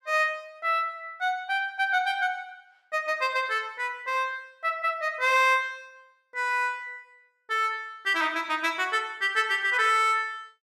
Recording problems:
none

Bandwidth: 14.5 kHz